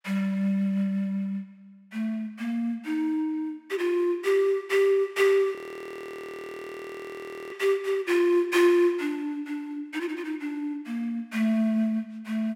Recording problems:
audio freezing; at 5.5 s for 2 s

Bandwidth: 16 kHz